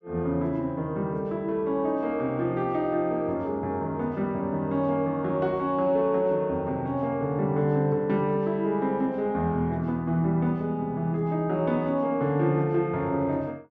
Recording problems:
none

